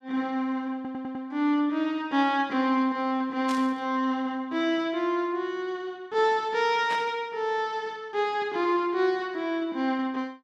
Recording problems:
stutter; at 1 s
static burst; at 3.5 s and at 7 s; peak -5 dB vs average level

